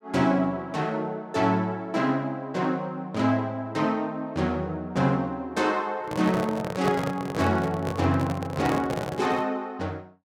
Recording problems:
microphone handling noise; from 6 to 9.5 s; peak +1 dB vs average level

